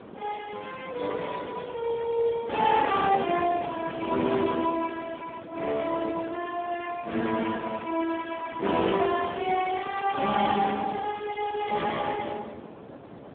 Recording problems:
phone line; 220 Hz to 2.3 kHz, Speex
wind on the microphone; below 730 Hz, SNR 13 dB

